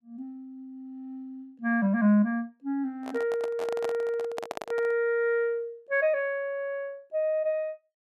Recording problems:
handling noise; from 3 to 5 s; peak -3 dB vs average level

